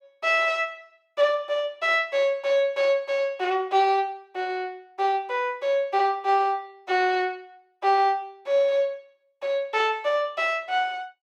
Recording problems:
none

